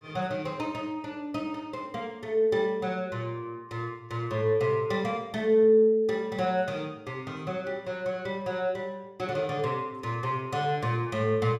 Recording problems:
none

